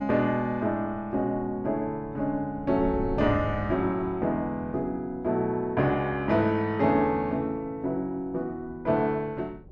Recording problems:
wind noise; below 230 Hz, SNR 16 dB

